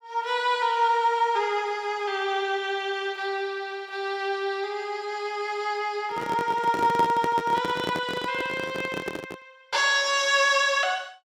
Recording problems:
handling noise; from 6 to 9.5 s; peak 0 dB vs average level

